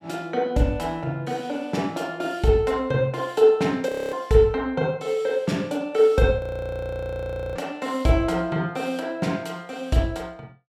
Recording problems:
frozen audio; at 4 s and at 6.5 s for 1 s

